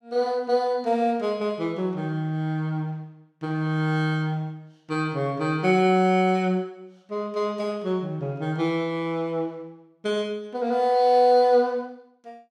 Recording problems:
none

